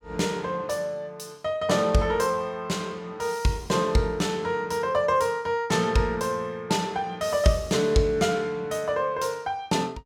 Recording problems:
none

